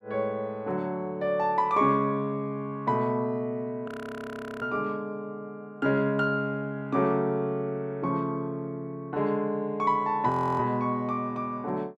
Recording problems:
audio freezing; at 4 s for 0.5 s and at 10 s

